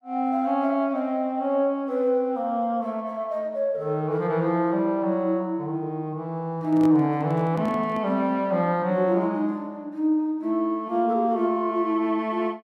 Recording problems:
microphone handling noise; from 6.5 to 8 s; peak -6 dB vs average level

